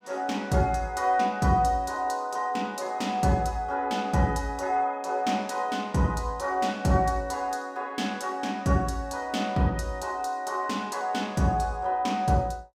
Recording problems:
none

